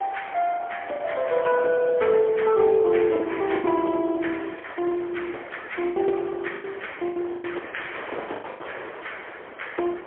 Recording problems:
telephone audio; 260 Hz to 3.4 kHz, AMR-NB, then MP3
wind on the microphone; below 1.3 kHz, SNR 16 dB
lost packets; 8% of the sound replaced, filled with the last packet

